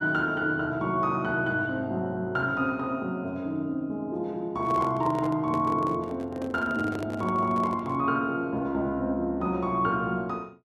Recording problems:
handling noise; from 4.5 to 8 s; peak -5 dB vs average level

